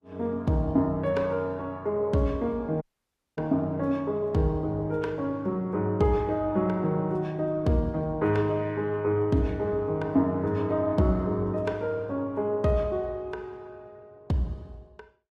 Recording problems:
codec artefacts; Vorbis, then Opus, log-spectral distance 2 dB, nothing above 13.7 kHz
dropout; at 3 s for 0.5 s

